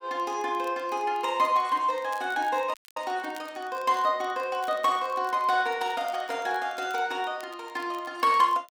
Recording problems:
crackle; vinyl, SNR 26 dB
dropout; at 2.5 s

